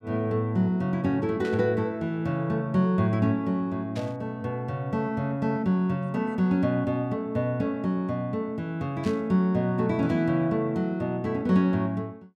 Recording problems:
static burst; at 1.5 s, at 4 s and at 9 s; peak -11 dB vs average level

